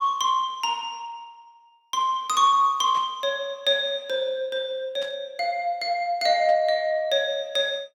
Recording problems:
burst of static; at 3 s, at 5 s and at 6.5 s; peak -14 dB vs average level

